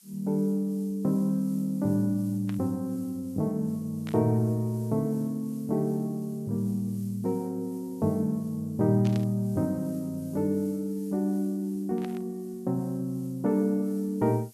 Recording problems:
background hiss; slope +5 dB per octave, SNR 25 dB
burst of static; 4 times, first at 2.5 s; peak -10 dB vs average level

